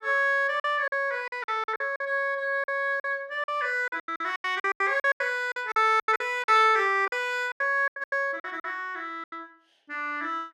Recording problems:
packet loss; 15% of the sound replaced, filled with silence

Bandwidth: 14 kHz